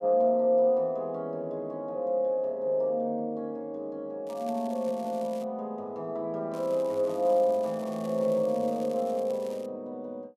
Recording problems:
crackling; from 4.5 to 5.5 s and from 6.5 to 9.5 s; loose cable, SNR 24 dB

